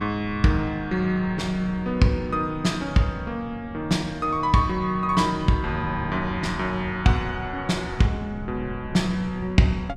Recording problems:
mains hum; 60 Hz, harmonics up to 1.6 kHz, SNR 24 dB
wind noise; below 160 Hz, SNR 15 dB

